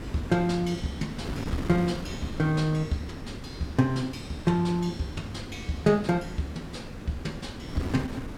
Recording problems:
wind noise; below 400 Hz, SNR 9 dB

